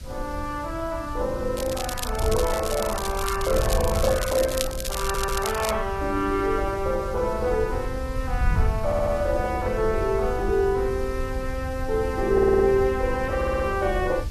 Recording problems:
lossy codec; AAC, log-spectral distance 3 dB
background hiss; SNR 20 dB
wind on the microphone; below 82 Hz, SNR 7 dB
crackling; from 1.5 to 5.5 s; loose cable, SNR 8 dB
audio stuttering; 4 times, first at 5 s

